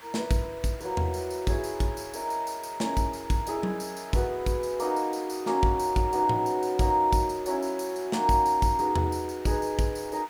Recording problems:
hiss; SNR 21 dB

